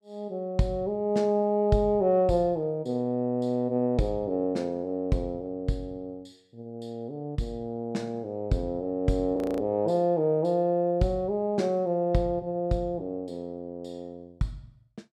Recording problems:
frozen audio; at 9.5 s

